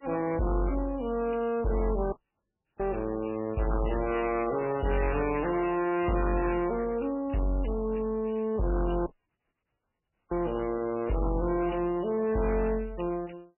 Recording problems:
lossy codec; MP3, then MP3, log-spectral distance 6 dB, nothing above 2.9 kHz
distorted audio; soft clipping, signal-to-distortion ratio 8 dB
dropout; at 2 s for 0.5 s and at 9 s for 1.5 s

